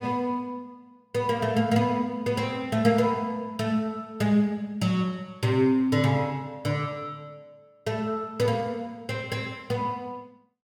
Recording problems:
none

